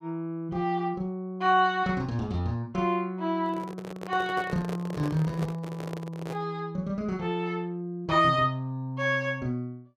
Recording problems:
handling noise; from 3.5 to 6.5 s; peak -4 dB vs average level

